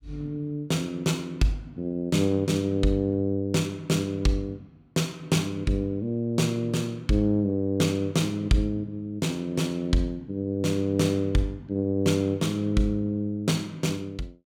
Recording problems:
none

